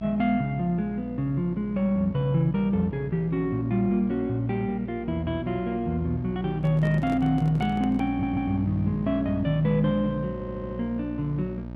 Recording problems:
electrical hum; 60 Hz, harmonics up to 960 Hz, SNR 12 dB
microphone handling noise; from 6.5 to 8.5 s; peak -7 dB vs average level
stutter; at 8 s and at 10 s

